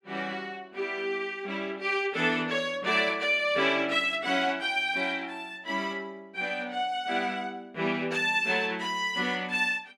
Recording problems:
none

